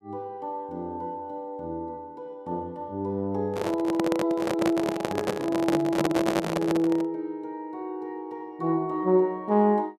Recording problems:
microphone handling noise; from 3.5 to 7 s; peak +5 dB vs average level

